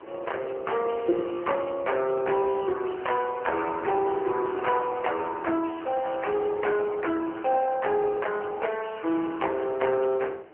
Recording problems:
phone line; 280 Hz to 3.1 kHz, AMR-NB
wind noise; below 860 Hz, SNR 21 dB

